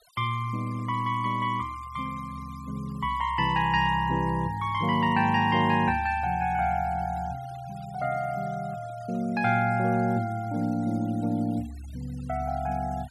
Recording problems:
denoising artefacts; signal-to-artefact ratio 24 dB

